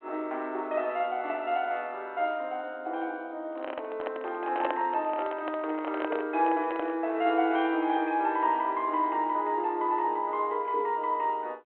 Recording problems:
telephone audio; 280 Hz to 3.3 kHz, G.726
microphone handling noise; from 3.5 to 7 s; peak +1 dB vs average level

